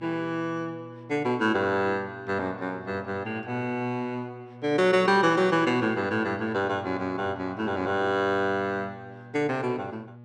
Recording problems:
hum; 60 Hz, harmonics up to 1.1 kHz, SNR 20 dB

